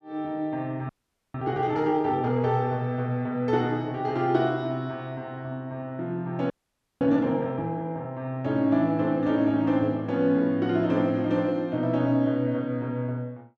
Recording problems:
frozen audio; at 1 s and at 6.5 s for 0.5 s

